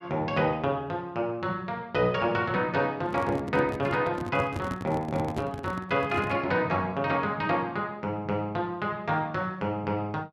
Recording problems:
handling noise; from 3 to 6.5 s; peak -1 dB vs average level

